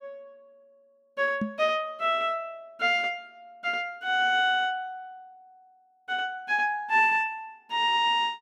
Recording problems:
knock on the microphone; at 1.5 s; peak 0 dB vs average level

